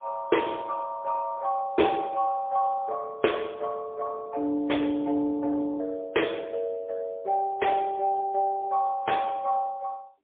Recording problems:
telephone audio; 240 Hz to 3.5 kHz, AMR-NB, then MP3

